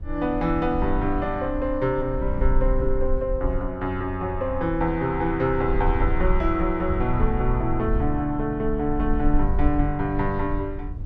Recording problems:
rumble; below 54 Hz, SNR 5 dB

